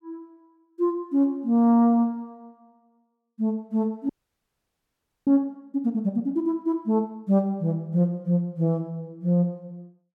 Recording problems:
frozen audio; at 4 s for 1 s

